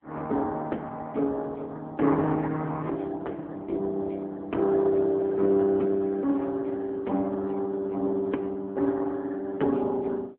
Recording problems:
phone line; 190 Hz to 3.7 kHz, AMR-NB

